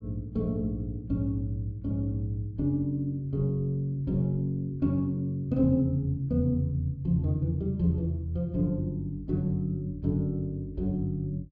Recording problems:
none

